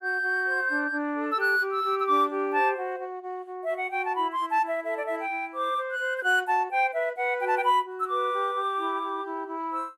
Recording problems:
none

